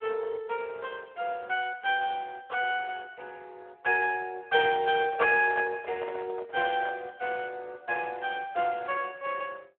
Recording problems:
telephone audio; 370 Hz to 3.3 kHz, Speex
microphone handling noise; from 5 to 7 s; peak -6 dB vs average level

